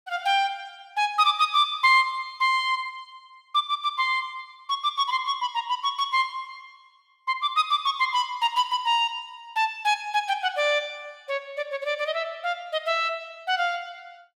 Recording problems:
none

